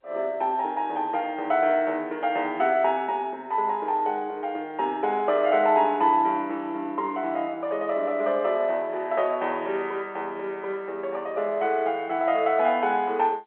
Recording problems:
telephone audio; 260 Hz to 3.3 kHz, G.711

